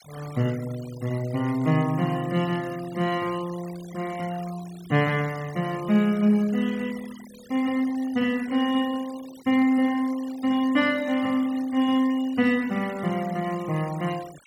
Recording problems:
noise reduction artefacts; signal-to-artefact ratio 20 dB

